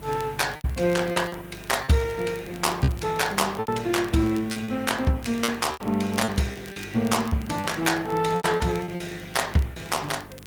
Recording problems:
lossy compression; Opus, log-spectral distance 4 dB
hum; 50 Hz, harmonics up to 450 Hz, SNR 18 dB
hiss; SNR 24 dB
crackling; vinyl, SNR 23 dB
packet loss; 10% of the sound replaced, filled with repeated pitch periods

